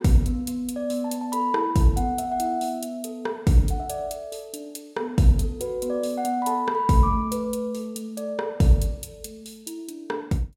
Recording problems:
none

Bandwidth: 16 kHz